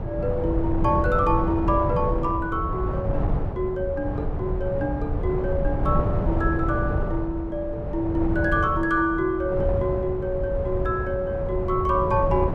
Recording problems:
wind noise; below 200 Hz, SNR 2 dB

